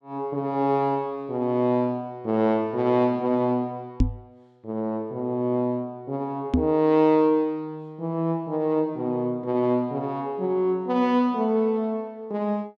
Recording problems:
microphone bump; at 4 s and at 6.5 s; peak +6 dB vs average level

